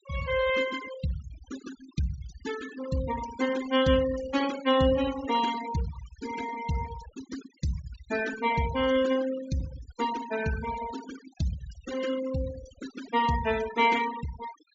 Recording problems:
low-pass filter; nothing above 7.3 kHz
denoising artefacts; signal-to-artefact ratio 12 dB

